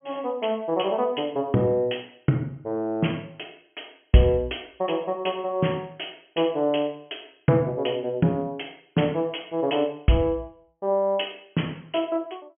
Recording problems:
treble cut off; nothing above 3.2 kHz

